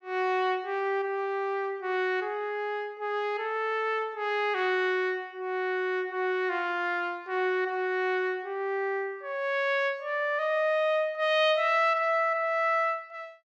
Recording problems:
none

